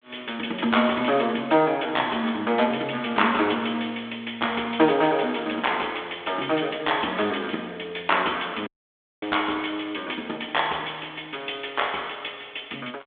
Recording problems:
telephone audio; 260 Hz to 3.6 kHz, G.726
audio cutting out; at 8.5 s for 0.5 s

